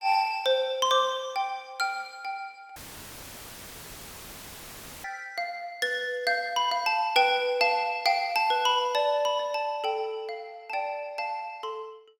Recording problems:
dropout; at 3 s for 2.5 s; filled with static

